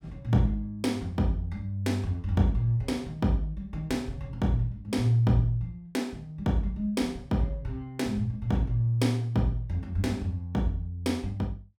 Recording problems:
none

